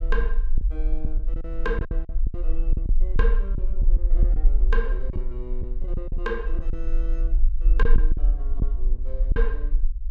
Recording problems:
rumble; below 40 Hz, strongest tone 18 Hz, SNR -10 dB
packet loss; 8% of the sound replaced, filled with silence

